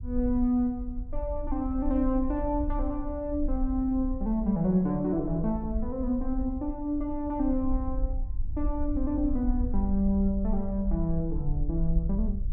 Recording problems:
low-frequency rumble; below 52 Hz, SNR 6 dB

